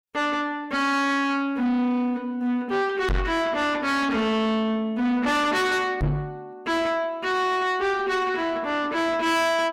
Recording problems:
distorted audio; soft clipping, signal-to-distortion ratio 6 dB
knock on the microphone; at 3 s and at 6 s; peak +3 dB vs average level

